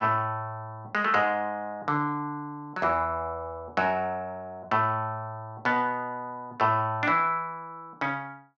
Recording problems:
none

